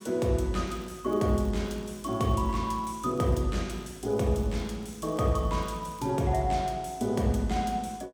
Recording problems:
crackle; from 0.5 to 3.5 s and from 3.5 to 6 s; loose cable, SNR 28 dB

